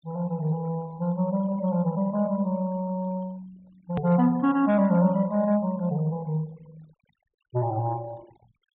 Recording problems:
treble cut off; nothing above 4 kHz
denoising artefacts; signal-to-artefact ratio 28 dB
click at an edit; at 4 s

